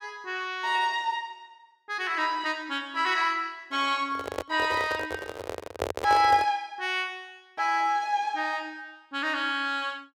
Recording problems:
handling noise; from 4 to 6.5 s; peak +2 dB vs average level

